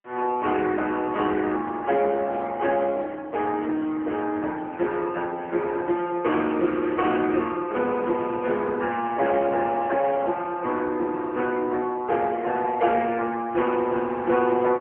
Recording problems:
telephone audio; 260 Hz to 3.8 kHz, AMR-NB

